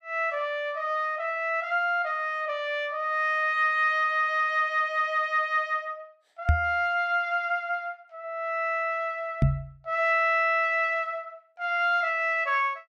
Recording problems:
microphone bump; at 6.5 s and at 9.5 s; peak +7 dB vs average level

